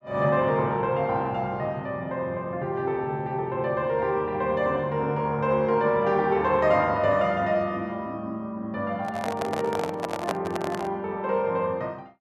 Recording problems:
handling noise; from 9 to 11 s; peak 0 dB vs average level

